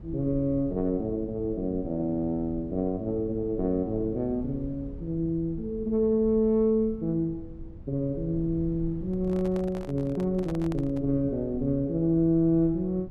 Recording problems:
low-frequency rumble; below 120 Hz, SNR 16 dB
handling noise; from 9 to 11 s; peak -10 dB vs average level

